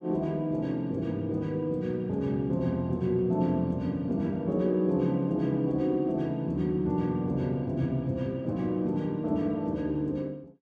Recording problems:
none

